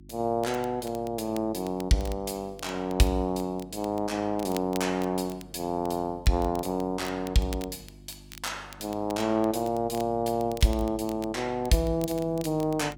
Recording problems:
hum; 50 Hz, harmonics up to 350 Hz, SNR 21 dB
crackling; vinyl, SNR 20 dB

